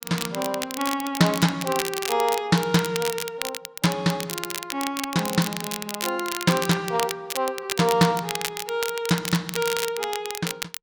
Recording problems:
crackle; vinyl, SNR 6 dB

